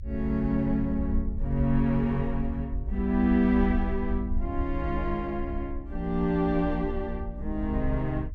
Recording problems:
rumble; below 62 Hz, SNR 6 dB

